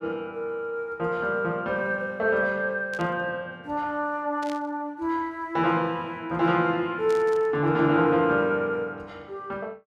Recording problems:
burst of static; at 3 s, at 4.5 s and at 7 s; peak -12 dB vs average level

